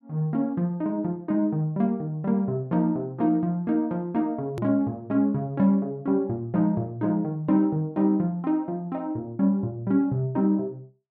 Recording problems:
hard cut with a click; at 4.5 s

